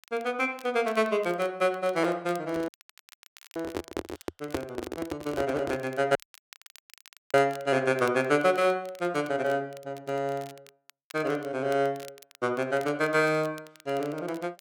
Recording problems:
crackle; vinyl, SNR 24 dB
microphone handling noise; from 2.5 to 6 s; peak +2 dB vs average level
audio cutting out; at 2.5 s for 1 s and at 6 s for 1 s

